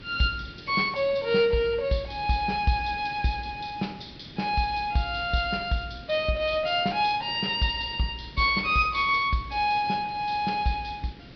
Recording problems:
treble cut off; nothing above 5.5 kHz
background hiss; SNR 20 dB

